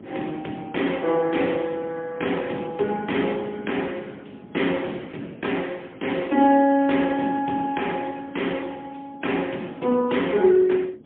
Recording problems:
telephone audio; 220 Hz to 3.4 kHz, AMR-NB, then MP3
wind on the microphone; below 390 Hz, SNR 20 dB

